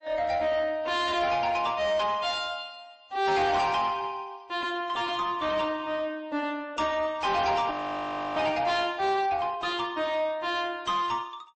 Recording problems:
codec artefacts; MP3, then AAC, log-spectral distance 2 dB, nothing above 8 kHz
distortion; soft clipping, signal-to-distortion ratio 9 dB
frozen audio; at 7.5 s for 0.5 s

